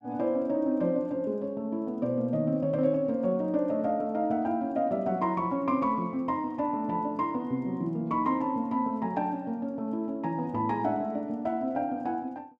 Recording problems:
none

